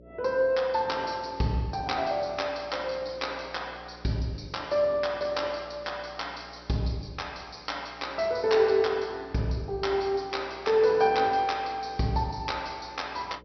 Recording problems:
low-pass filter; nothing above 5.7 kHz
electrical hum; 60 Hz, harmonics up to 600 Hz, SNR 24 dB

